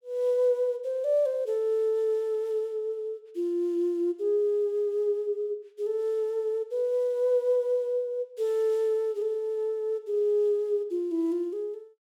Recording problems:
none

